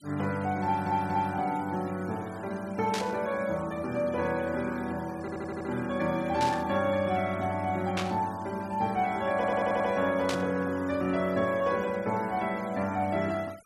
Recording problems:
noise reduction artefacts; signal-to-artefact ratio 21 dB
stutter; at 0.5 s, at 5 s and at 9.5 s
burst of static; 4 times, first at 3 s; peak 0 dB vs average level

